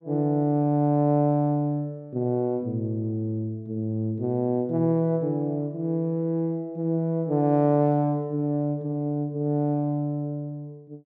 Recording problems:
none

